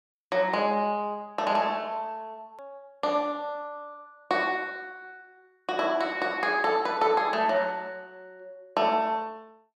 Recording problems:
click at an edit; at 2.5 s

